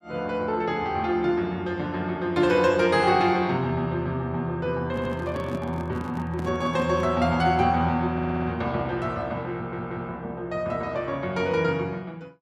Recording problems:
audio stuttering; at 5 s, at 8 s and at 9.5 s
microphone handling noise; from 5 to 7 s; peak -6 dB vs average level

